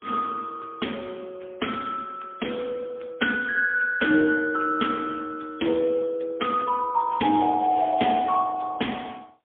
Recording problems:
phone line; 240 Hz to 3.3 kHz, AMR-NB, then MP3
crackle; from 7 to 8.5 s; loose cable, SNR 21 dB

